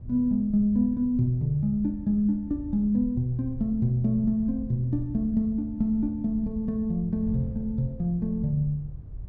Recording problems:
wind on the microphone; below 96 Hz, SNR 14 dB

